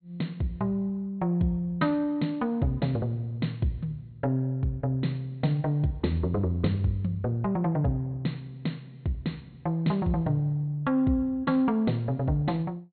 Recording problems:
treble cut off; nothing above 4.3 kHz

